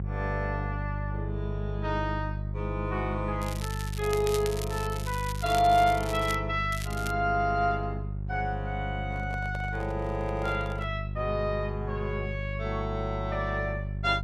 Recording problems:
hum; 50 Hz, harmonics up to 400 Hz, SNR 4 dB
crackling; from 3.5 to 6.5 s and at 6.5 s; loose cable, SNR 11 dB
microphone handling noise; from 9 to 11 s; peak -7 dB vs average level

